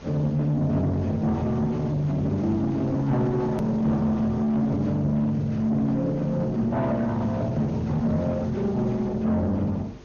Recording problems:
lossy codec; Opus, then MP2, log-spectral distance 2 dB, nothing above 13.1 kHz
distorted audio; soft clipping, signal-to-distortion ratio 12 dB
hum; 50 Hz, harmonics up to 450 Hz, SNR 26 dB
hiss; slope -3 dB per octave, SNR 24 dB
edit click; at 3.5 s

